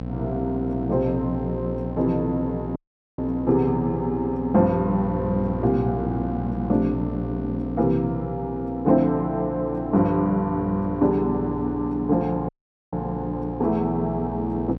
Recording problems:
hum; 60 Hz, harmonics up to 1 kHz, SNR 8 dB
audio cutting out; at 3 s and at 12 s

